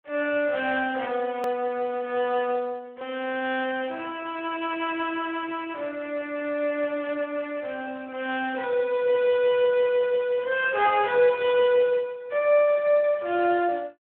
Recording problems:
phone line; 280 Hz to 3.4 kHz, Speex
hard cut with a click; at 1.5 s

